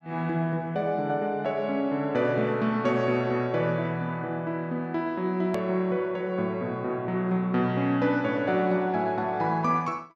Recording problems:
hard cut with a click; at 5.5 s

